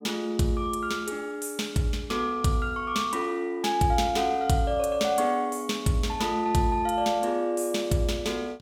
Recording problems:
none

